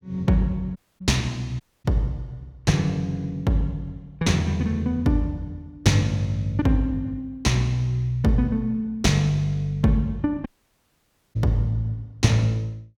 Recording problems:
audio cutting out; at 1 s, at 1.5 s and at 10 s for 1 s

